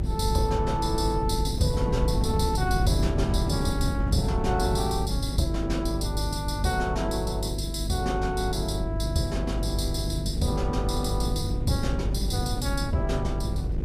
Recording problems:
hum; 50 Hz, harmonics up to 500 Hz, SNR 2 dB
wind on the microphone; below 170 Hz, SNR 3 dB

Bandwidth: 15 kHz